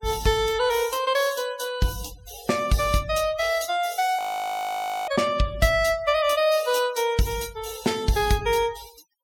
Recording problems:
denoising artefacts; signal-to-artefact ratio 19 dB
audio freezing; at 4 s for 1 s

